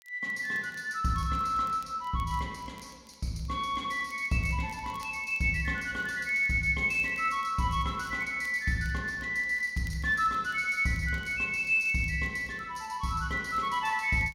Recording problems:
crackle; vinyl, SNR 30 dB

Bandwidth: 16 kHz